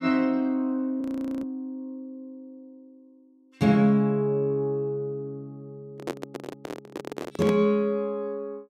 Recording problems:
frozen audio; at 1 s
microphone handling noise; from 6 to 7.5 s; peak 0 dB vs average level

